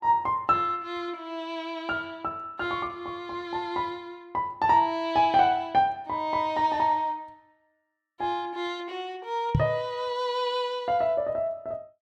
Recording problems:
microphone bump; at 9.5 s; peak +7 dB vs average level

